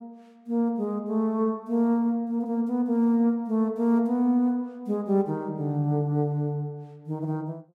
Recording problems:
none

